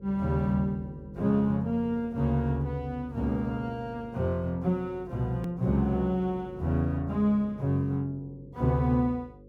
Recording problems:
hum; 50 Hz, harmonics up to 550 Hz, SNR 21 dB
hard cut with a click; at 5.5 s

